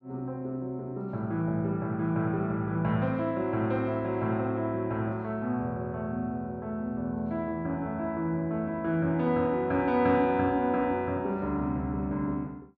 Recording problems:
none

